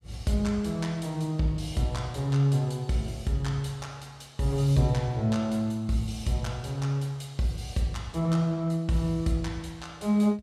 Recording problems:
none

